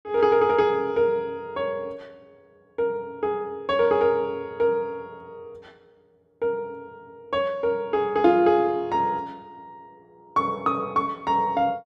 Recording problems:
none

